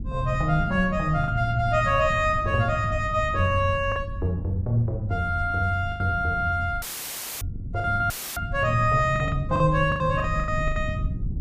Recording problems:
low-frequency rumble; below 120 Hz, SNR 9 dB
lost packets; 8% of the sound replaced, filled with the last packet
audio cutting out; at 7 s for 0.5 s and at 8 s; filled with static

